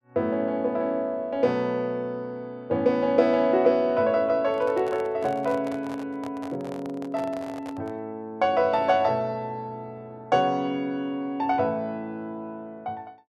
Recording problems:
handling noise; from 4.5 to 8 s; peak -10 dB vs average level

